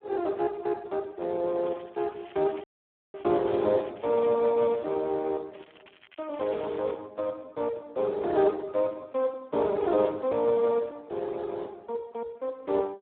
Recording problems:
phone line; 300 Hz to 2.3 kHz, Speex
crackling; from 1.5 to 4.5 s, at 4.5 s and from 5.5 to 7 s; loose cable, SNR 28 dB
audio cutting out; at 2.5 s for 0.5 s

